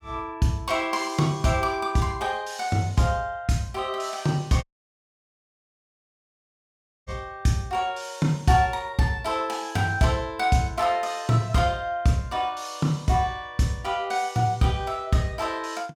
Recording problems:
audio cutting out; at 4.5 s for 2.5 s

